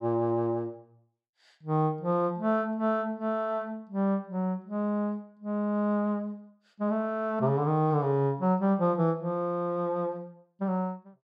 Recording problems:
none

